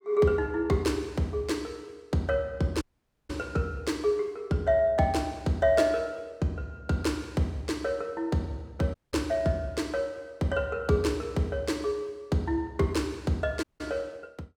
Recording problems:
audio cutting out; at 3 s, at 9 s and at 14 s

